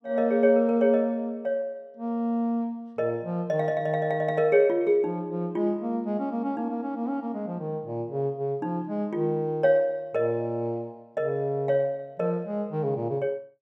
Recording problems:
none

